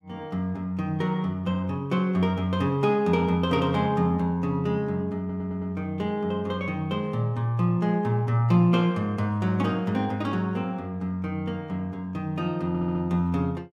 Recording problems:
stutter; at 5 s and at 13 s

